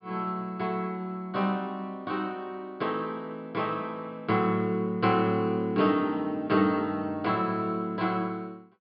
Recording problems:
treble cut off; nothing above 5.5 kHz

